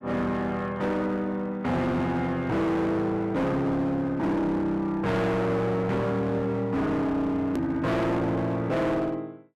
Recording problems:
distortion; hard clipping, uneven, signal-to-distortion ratio 7 dB
click at an edit; at 7.5 s

